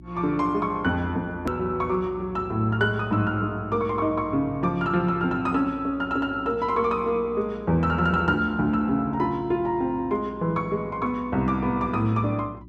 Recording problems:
hum; 60 Hz, harmonics up to 360 Hz, SNR 20 dB
hard cut with a click; at 1.5 s

